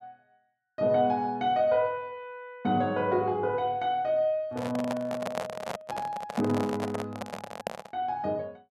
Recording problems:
microphone handling noise; from 4.5 to 8 s; peak 0 dB vs average level

